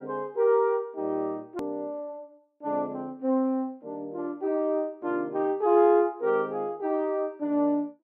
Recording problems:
click at an edit; at 1.5 s

